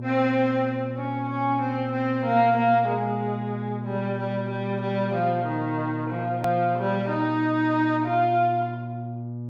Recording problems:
electrical hum; 60 Hz, harmonics up to 600 Hz, SNR 8 dB
edit click; at 6.5 s

